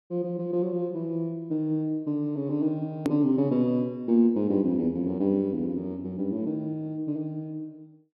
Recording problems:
treble missing; nothing above 5.5 kHz
edit click; at 3 s

